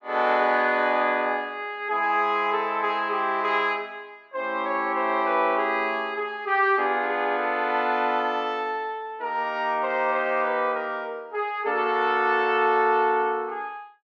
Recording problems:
none

